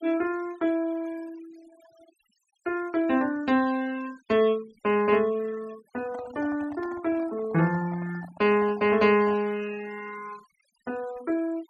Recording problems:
noise reduction artefacts; signal-to-artefact ratio 22 dB
microphone handling noise; from 6 to 9.5 s; peak -12 dB vs average level

